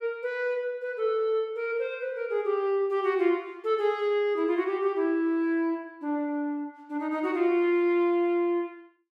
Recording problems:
none

